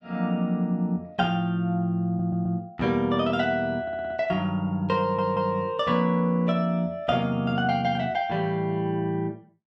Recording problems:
audio stuttering; at 2 s, at 4 s and at 5 s

